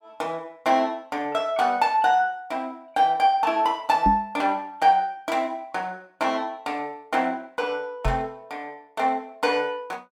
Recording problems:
knock on the microphone; at 4 s and at 8 s; peak +3 dB vs average level

